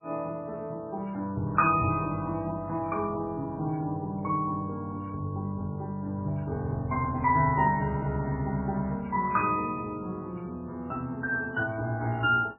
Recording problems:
lossy compression; MP3, log-spectral distance 2 dB, nothing above 2.5 kHz

